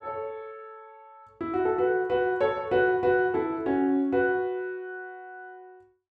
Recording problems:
none

